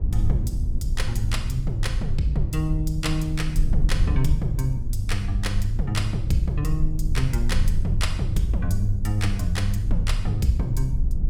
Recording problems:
rumble; below 66 Hz, SNR 1 dB

